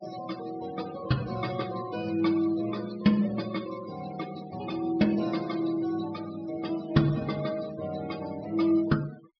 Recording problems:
treble cut off; nothing above 5.5 kHz
noise reduction artefacts; signal-to-artefact ratio 17 dB

